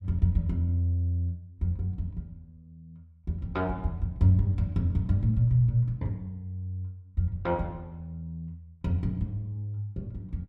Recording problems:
none

